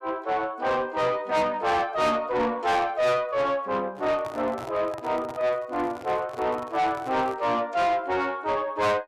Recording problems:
distorted audio; soft clipping, signal-to-distortion ratio 8 dB
microphone handling noise; from 4 to 7.5 s; peak -9 dB vs average level

